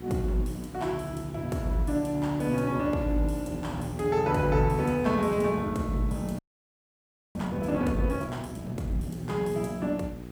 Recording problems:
hum; 60 Hz, harmonics up to 900 Hz, SNR 13 dB
background hiss; slope -4 dB per octave, SNR 25 dB
frozen audio; at 6.5 s for 1 s

